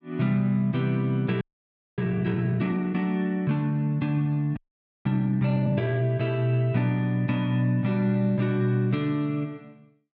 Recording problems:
frozen audio; at 1.5 s for 0.5 s and at 4.5 s

